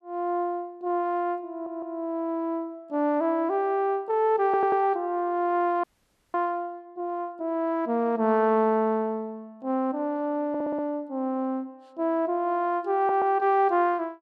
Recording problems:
stutter; 4 times, first at 1.5 s
audio freezing; at 6 s for 0.5 s

